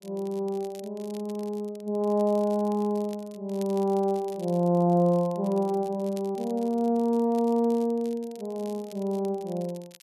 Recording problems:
crackling; vinyl, SNR 25 dB

